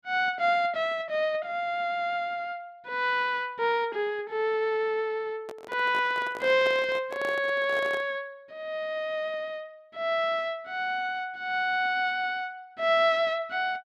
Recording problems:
microphone handling noise; from 5.5 to 8 s; peak -6 dB vs average level

